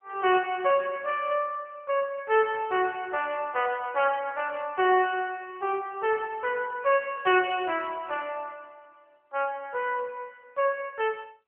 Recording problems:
phone line; 320 Hz to 3.2 kHz, AMR-NB

